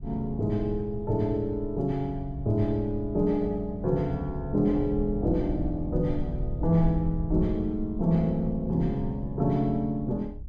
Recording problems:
low-frequency rumble; below 76 Hz, SNR 10 dB

